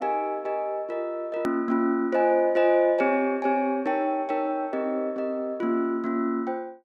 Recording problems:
edit click; at 1.5 s

